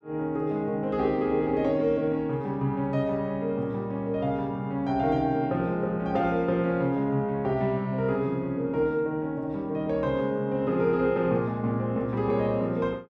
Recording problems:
none

